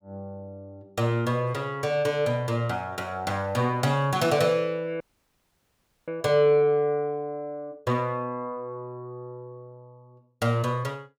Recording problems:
audio freezing; at 5 s for 1 s

